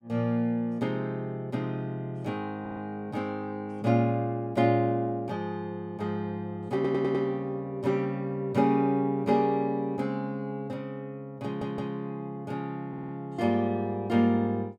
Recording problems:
stutter; 4 times, first at 2.5 s

